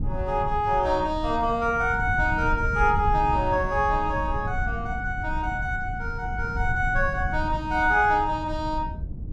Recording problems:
rumble; below 110 Hz, SNR 8 dB

